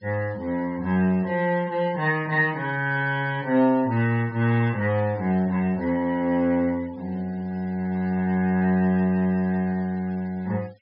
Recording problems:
low-pass filter; nothing above 5.5 kHz
noise reduction artefacts; signal-to-artefact ratio 26 dB

